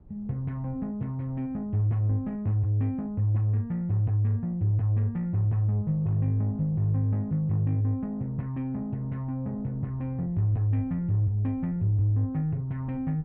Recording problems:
wind on the microphone; below 170 Hz, SNR 24 dB

